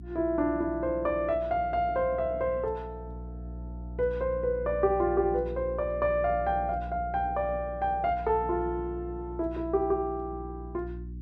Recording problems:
electrical hum; 60 Hz, harmonics up to 360 Hz, SNR 12 dB

